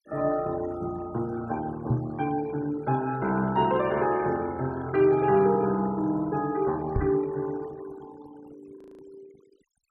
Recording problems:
noise reduction artefacts; signal-to-artefact ratio 22 dB
microphone thump; at 2 s and at 7 s; peak +4 dB vs average level
frozen audio; at 9 s

